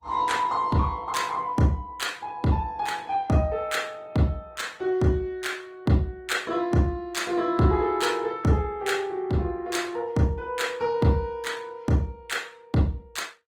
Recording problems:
lossy compression; Opus, log-spectral distance 2 dB, nothing above 19 kHz

